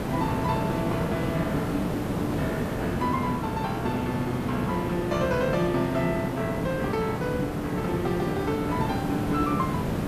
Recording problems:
hiss; slope -8 dB per octave, SNR 1 dB

